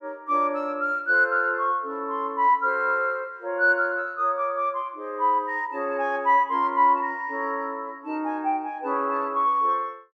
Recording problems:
none

